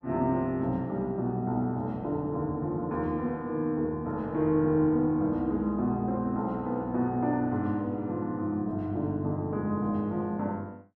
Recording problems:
none

